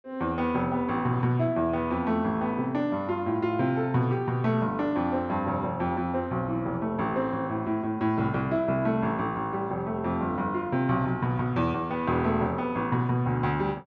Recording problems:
none

